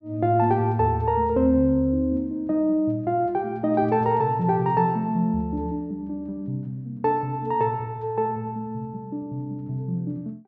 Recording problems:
none

